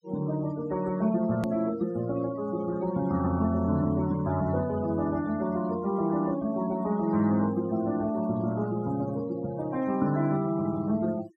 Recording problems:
noise reduction artefacts; signal-to-artefact ratio 20 dB
click at an edit; at 1.5 s

